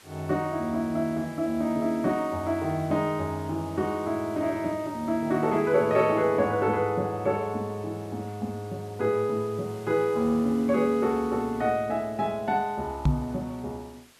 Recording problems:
hiss; slope -1 dB per octave, SNR 24 dB
knock on the microphone; at 13 s; peak +7 dB vs average level

